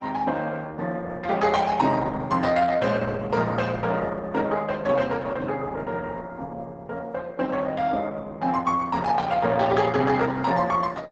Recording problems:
lossy codec; Opus, log-spectral distance 4 dB, nothing above 7.6 kHz

